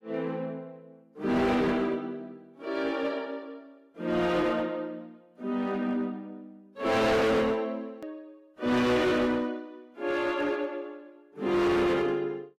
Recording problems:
codec artefacts; AAC, log-spectral distance 2 dB, nothing above 15.1 kHz
distortion; hard clipping, signal-to-distortion ratio 7 dB
click at an edit; at 8 s

